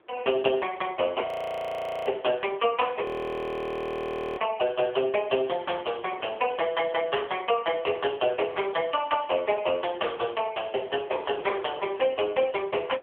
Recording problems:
telephone audio; 300 Hz to 3.3 kHz, AMR-NB
wind on the microphone; below 840 Hz, SNR 21 dB
frozen audio; at 1.5 s for 1 s and at 3 s for 1.5 s

